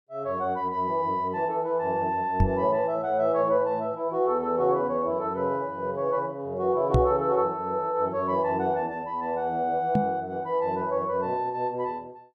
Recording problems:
microphone thump; at 2.5 s, at 7 s and at 10 s; peak +7 dB vs average level

